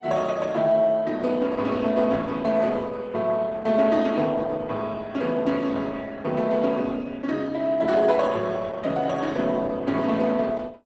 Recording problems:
lossy codec; Opus, log-spectral distance 3 dB, nothing above 8 kHz

